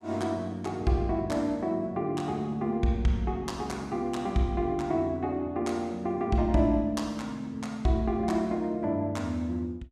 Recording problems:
none

